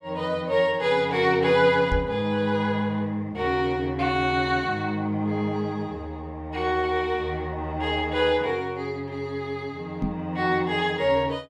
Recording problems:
knock on the microphone; at 2 s and at 10 s; peak +1 dB vs average level

